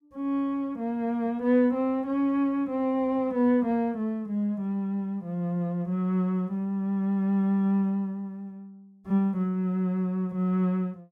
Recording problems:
none

